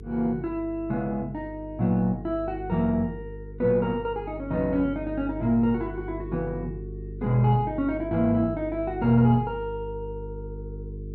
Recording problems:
hum; 50 Hz, harmonics up to 450 Hz, SNR 13 dB

